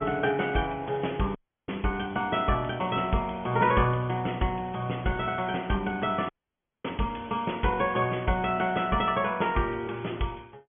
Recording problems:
treble missing; nothing above 3.3 kHz
codec artefacts; Opus, log-spectral distance 4 dB
dropout; at 1.5 s and at 6.5 s for 0.5 s

